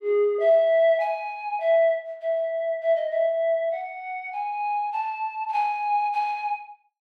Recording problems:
none

